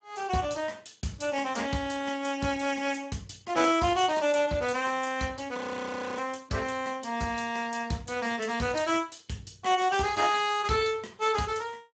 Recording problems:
lossy compression; Speex, log-spectral distance 6 dB, nothing above 7.6 kHz
audio freezing; at 5.5 s for 0.5 s

